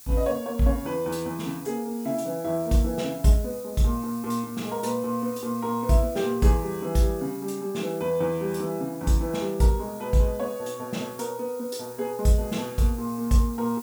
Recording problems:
background hiss; SNR 18 dB

